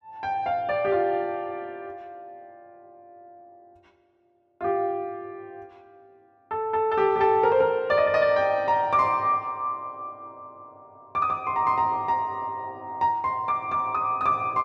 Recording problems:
none

